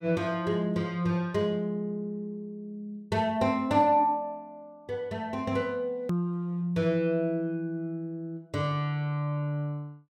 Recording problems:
edit click; at 6 s

